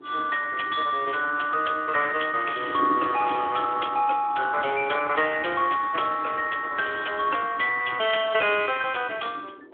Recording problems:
phone line; 260 Hz to 3.5 kHz, Speex
wind on the microphone; below 390 Hz, SNR 17 dB

